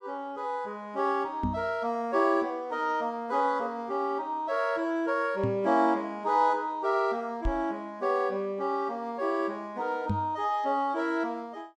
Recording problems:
microphone bump; 4 times, first at 1.5 s; peak +3 dB vs average level

